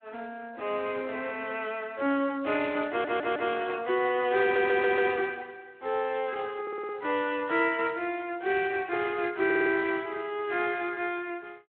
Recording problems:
phone line; 240 Hz to 3.5 kHz, Speex
audio stuttering; 4 times, first at 3 s

